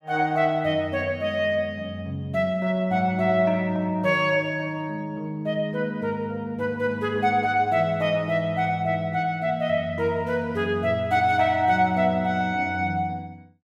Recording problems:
none

